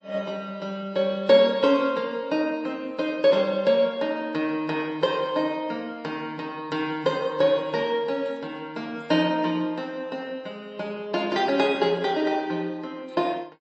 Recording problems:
lossy codec; MP3, log-spectral distance 2 dB, nothing above 7.8 kHz

